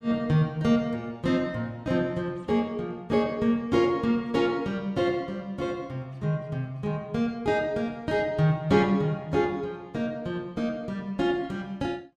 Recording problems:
none

